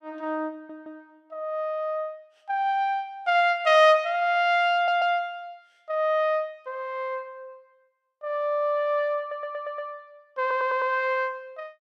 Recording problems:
audio stuttering; 4 times, first at 0.5 s

